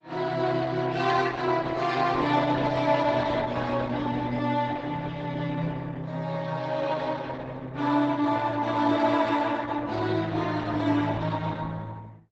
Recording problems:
lossy compression; Opus, log-spectral distance 4 dB, nothing above 8 kHz

